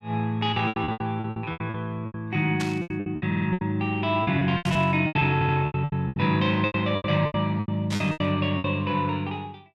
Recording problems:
lost packets; 19% of the sound replaced, filled with repeated pitch periods
static burst; at 2.5 s, at 4.5 s and at 8 s; peak -3 dB vs average level
stutter; at 3.5 s and at 5.5 s

